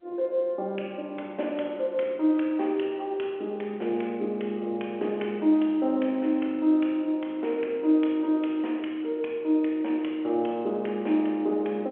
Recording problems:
telephone audio; 260 Hz to 3.3 kHz, G.711

